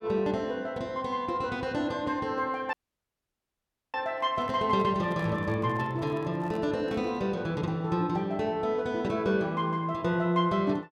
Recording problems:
dropout; at 2.5 s for 1 s
handling noise; from 4 to 7 s; peak -11 dB vs average level

